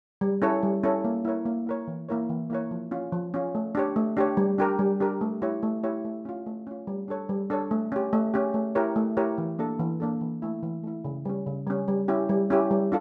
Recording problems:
none

